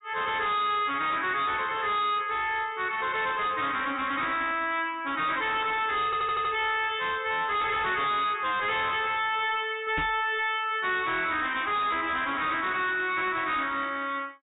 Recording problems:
low-pass filter; nothing above 4 kHz
distortion; hard clipping, uneven, signal-to-distortion ratio 7 dB
audio stuttering; at 6 s
microphone thump; at 10 s; peak -1 dB vs average level

